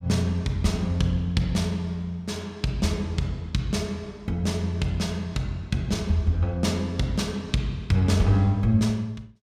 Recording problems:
none

